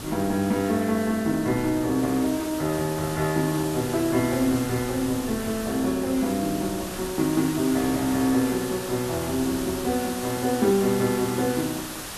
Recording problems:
background hiss; slope -2 dB per octave, SNR 10 dB
wind on the microphone; below 350 Hz, SNR 20 dB

